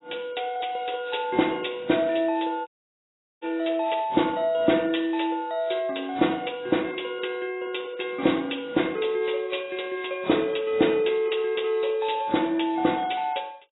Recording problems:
lossy compression; AAC, log-spectral distance 6 dB, nothing above 3.8 kHz
dropout; at 2.5 s for 0.5 s

